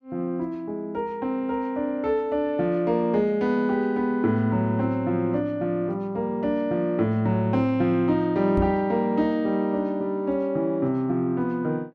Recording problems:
microphone bump; at 8.5 s; peak 0 dB vs average level

